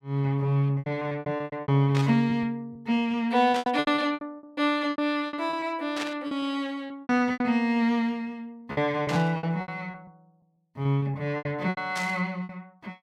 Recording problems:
lost packets; 16% of the sound replaced, filled with repeated pitch periods
burst of static; 5 times, first at 2 s; peak -2 dB vs average level

